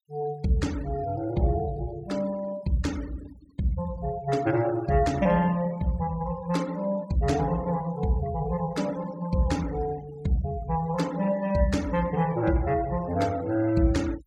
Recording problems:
noise reduction artefacts; signal-to-artefact ratio 20 dB

